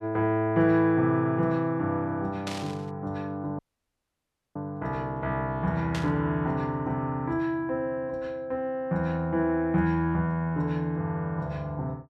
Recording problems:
static burst; at 2.5 s and at 6 s; peak -4 dB vs average level
audio cutting out; at 3.5 s for 1 s

